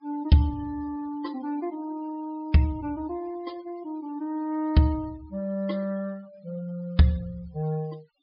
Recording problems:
low-pass filter; nothing above 5.5 kHz
denoising artefacts; signal-to-artefact ratio 27 dB

